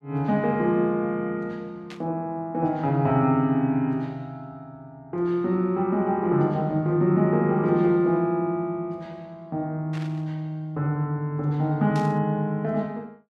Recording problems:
static burst; at 2 s, at 10 s and at 12 s; peak -12 dB vs average level

